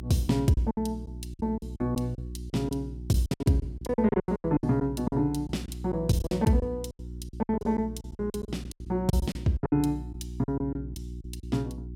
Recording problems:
hum; 60 Hz, harmonics up to 360 Hz, SNR 11 dB
lost packets; 17% of the sound replaced, filled with silence

